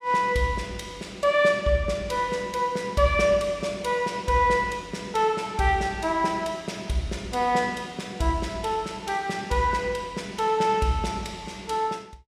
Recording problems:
none

